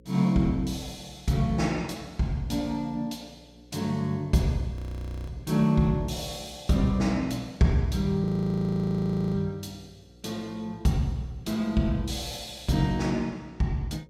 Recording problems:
electrical hum; 60 Hz, harmonics up to 540 Hz, SNR 27 dB
audio freezing; at 5 s for 0.5 s and at 8 s for 1 s

